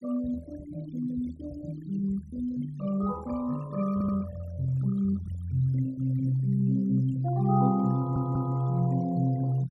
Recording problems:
denoising artefacts; signal-to-artefact ratio 21 dB
stutter; at 4 s and at 8 s

